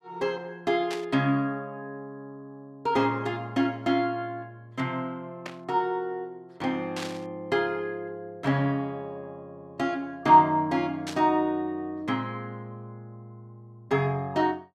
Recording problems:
static burst; 4 times, first at 1 s; peak -5 dB vs average level

